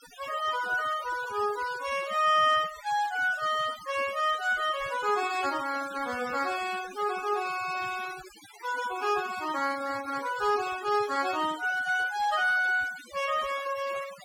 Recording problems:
denoising artefacts; signal-to-artefact ratio 15 dB

